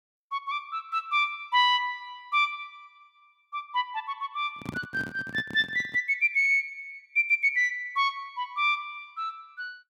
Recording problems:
microphone handling noise; from 4.5 to 6 s; peak -4 dB vs average level

